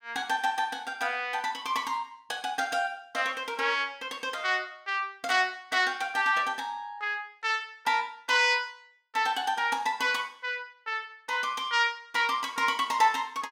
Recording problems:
none

